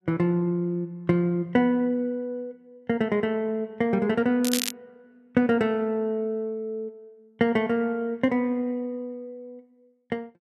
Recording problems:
crackling; at 4.5 s; loose cable, SNR 4 dB

